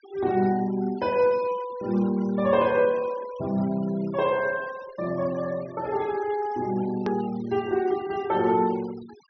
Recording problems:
low-pass filter; nothing above 6 kHz
denoising artefacts; signal-to-artefact ratio 22 dB
edit click; at 7 s

